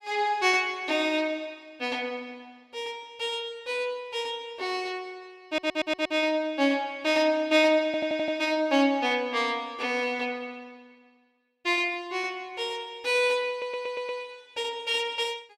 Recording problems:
audio stuttering; at 5.5 s, at 8 s and at 14 s

